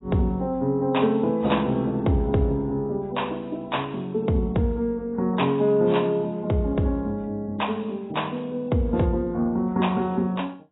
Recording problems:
lossy compression; AAC, log-spectral distance 2 dB, nothing above 3.8 kHz

